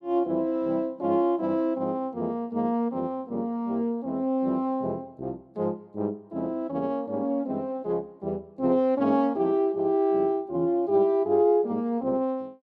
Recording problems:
none

